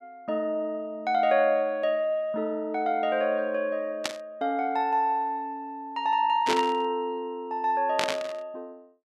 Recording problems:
burst of static; at 4 s, at 6.5 s and at 8 s; peak +4 dB vs average level

